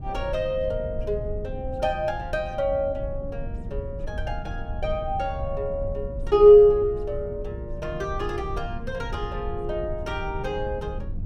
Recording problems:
low-frequency rumble; below 100 Hz, SNR 11 dB

